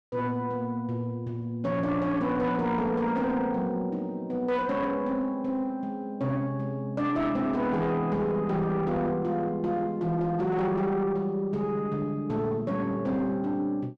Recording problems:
distorted audio; soft clipping, signal-to-distortion ratio 11 dB

